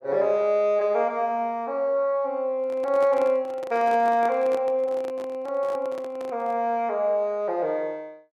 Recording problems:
handling noise; from 2.5 to 6.5 s; peak -8 dB vs average level

